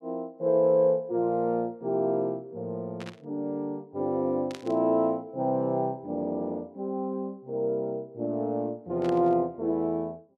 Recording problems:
burst of static; at 3 s, at 4.5 s and at 9 s; peak -9 dB vs average level

